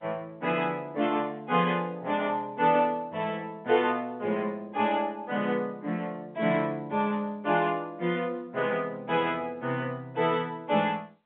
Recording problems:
telephone audio; 220 Hz to 3.5 kHz, G.711

